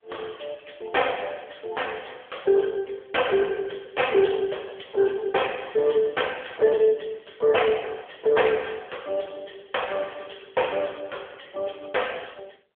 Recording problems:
phone line; 340 Hz to 3.4 kHz, AMR-NB

